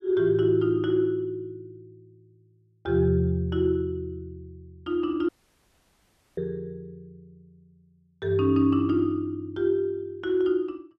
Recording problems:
dropout; at 5.5 s for 1 s

